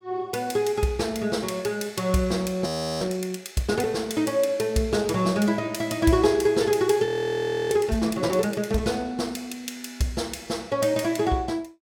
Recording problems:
audio freezing; at 2.5 s and at 7 s for 0.5 s

